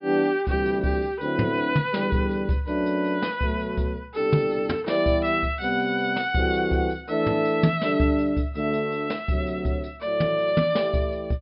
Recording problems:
low-pass filter; nothing above 5.5 kHz

